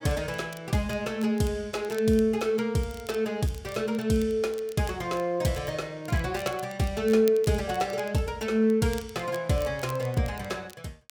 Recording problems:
crackle; vinyl, SNR 21 dB

